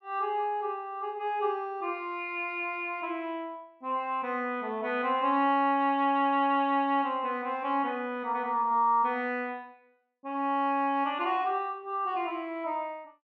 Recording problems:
none

